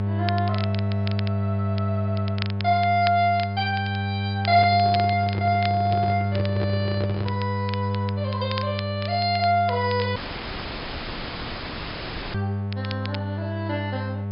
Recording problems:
treble cut off; nothing above 5.5 kHz
hum; 50 Hz, harmonics up to 900 Hz, SNR 2 dB
crackle; vinyl, SNR 14 dB
handling noise; from 4.5 to 7.5 s; peak -2 dB vs average level
audio cutting out; at 10 s for 2 s; filled with static

